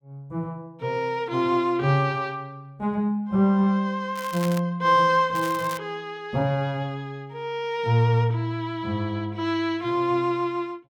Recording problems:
crackle; at 4 s and at 5.5 s; loose cable, SNR 16 dB

